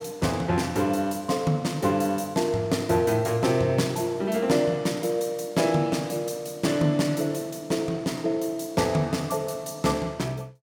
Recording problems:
none

